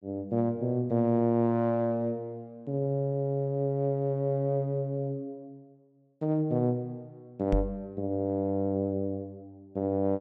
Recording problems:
knock on the microphone; at 7.5 s; peak +4 dB vs average level

